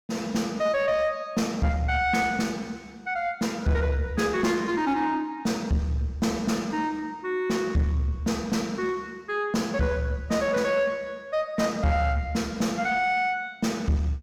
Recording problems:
distortion; soft clipping, signal-to-distortion ratio 10 dB

